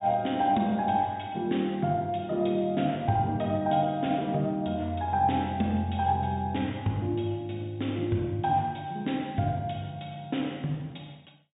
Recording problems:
low-pass filter; nothing above 4 kHz

